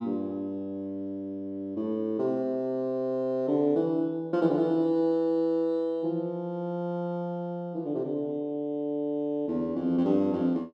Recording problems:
none

